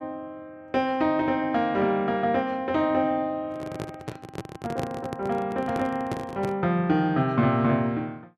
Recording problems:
microphone handling noise; from 3.5 to 6.5 s; peak -2 dB vs average level

